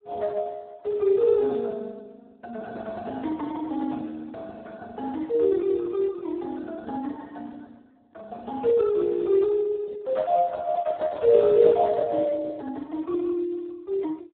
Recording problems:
phone line; 280 Hz to 2 kHz, Speex

